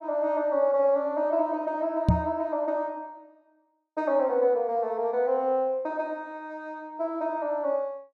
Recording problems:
knock on the microphone; at 2 s; peak +9 dB vs average level

